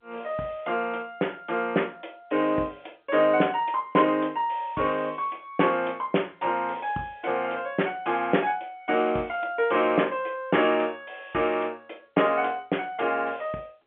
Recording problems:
telephone audio; 240 Hz to 3.3 kHz, G.711

